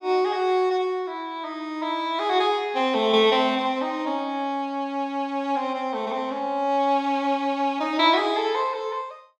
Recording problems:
none

